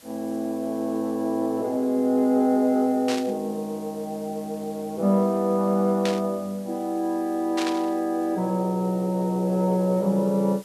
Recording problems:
hiss; slope -1 dB per octave, SNR 24 dB
static burst; at 3 s, at 6 s and at 7.5 s; peak -2 dB vs average level

